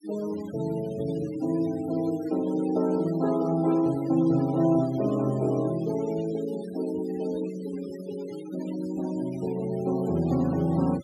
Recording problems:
denoising artefacts; signal-to-artefact ratio 20 dB

